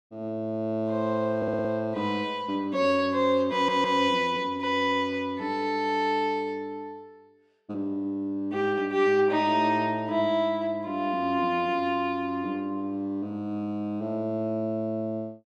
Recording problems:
audio stuttering; at 1.5 s and at 3.5 s

